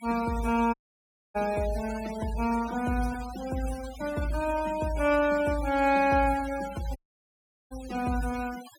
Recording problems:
denoising artefacts; signal-to-artefact ratio 15 dB
audio cutting out; at 0.5 s for 0.5 s and at 7 s for 0.5 s

